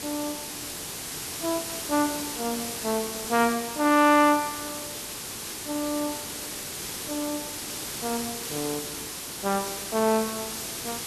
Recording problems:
background hiss; SNR 6 dB

